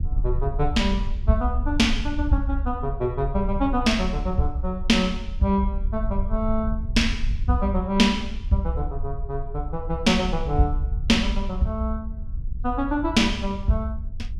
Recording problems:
wind on the microphone; below 64 Hz, SNR 6 dB

